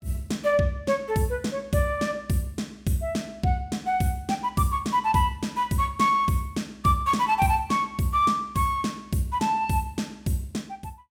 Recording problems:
none

